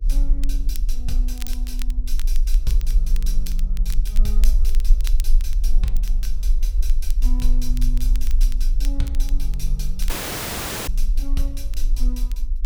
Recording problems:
hum; 60 Hz, harmonics up to 480 Hz, SNR 27 dB
low-frequency rumble; below 38 Hz, strongest tone 22 Hz, SNR -11 dB
crackling; vinyl, SNR 9 dB
audio cutting out; at 10 s for 1 s

